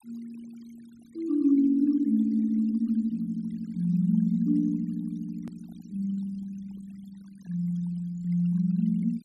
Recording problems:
noise reduction artefacts; signal-to-artefact ratio 27 dB
click at an edit; at 5.5 s

